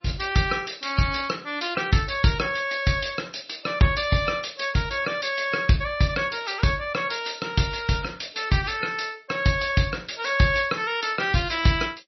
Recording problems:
lossy codec; MP3, log-spectral distance 7 dB, nothing above 5.7 kHz

